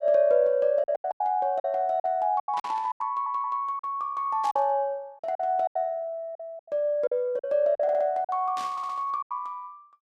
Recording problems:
packet loss; 12% of the sound replaced, filled with silence
static burst; at 2.5 s, at 4.5 s and at 8.5 s; peak -10 dB vs average level
stutter; at 3 s, at 8 s and at 8.5 s

